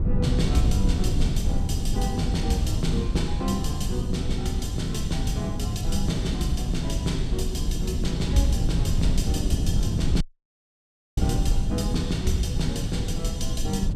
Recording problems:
wind noise; below 120 Hz, SNR -2 dB
audio cutting out; at 10 s for 1 s

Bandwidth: 15 kHz